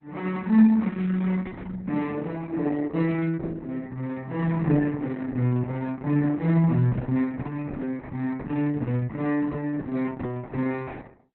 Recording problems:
lossy codec; Opus, log-spectral distance 3 dB, nothing above 4.1 kHz

